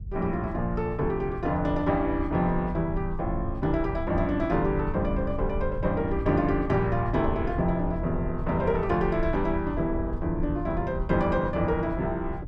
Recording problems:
rumble; below 84 Hz, SNR 8 dB

